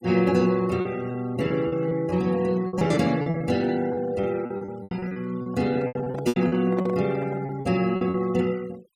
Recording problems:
noise reduction artefacts; signal-to-artefact ratio 21 dB
packet loss; 14% of the sound replaced, filled with repeated pitch periods
microphone handling noise; from 5.5 to 7.5 s; peak -5 dB vs average level

